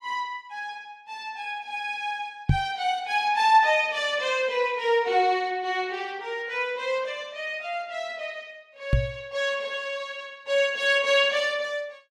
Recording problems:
microphone thump; at 2.5 s and at 9 s; peak +8 dB vs average level

